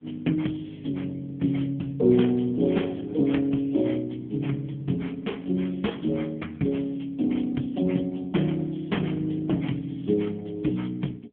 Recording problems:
telephone audio; 86 Hz to 3.4 kHz, AMR-NB

